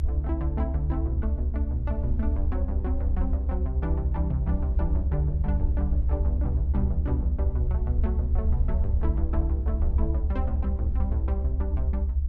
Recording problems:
rumble; below 70 Hz, strongest tone 68 Hz, SNR -7 dB

